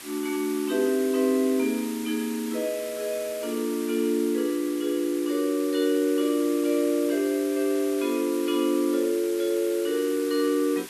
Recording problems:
background hiss; slope +1 dB per octave, SNR 14 dB

